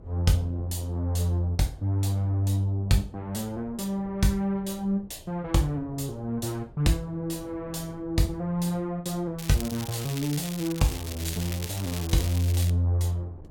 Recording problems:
wind noise; below 300 Hz, SNR 21 dB
crackling; from 9.5 to 13 s; loose cable, SNR 10 dB

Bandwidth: 17 kHz